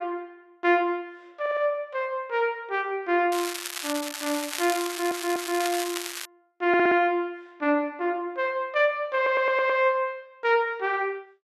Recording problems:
audio stuttering; 4 times, first at 1.5 s
crackle; from 3.5 to 6.5 s; loose cable, SNR 7 dB

